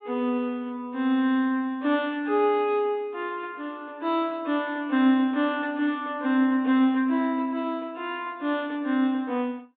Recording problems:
treble missing; nothing above 4 kHz

